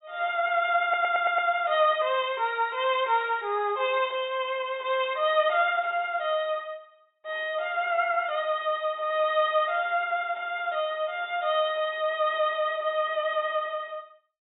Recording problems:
treble cut off; nothing above 4 kHz
audio stuttering; at 1 s

